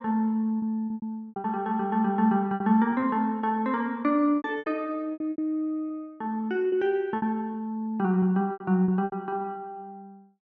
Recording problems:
lost packets; 11% of the sound replaced, filled with repeated pitch periods

